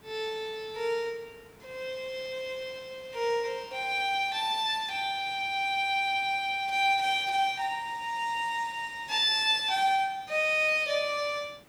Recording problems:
background hiss; slope -5 dB per octave, SNR 28 dB

